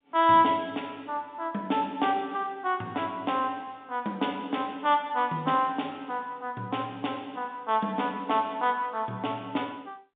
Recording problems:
telephone audio; 130 Hz to 3.7 kHz, G.711

